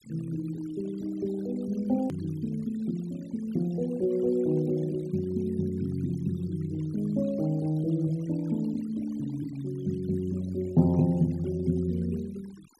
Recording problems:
noise reduction artefacts; signal-to-artefact ratio 24 dB
hard cut with a click; at 2 s

